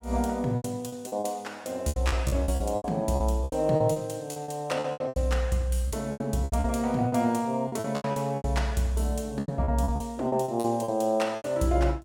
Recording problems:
lost packets; 17% of the sound replaced, filled with repeated pitch periods

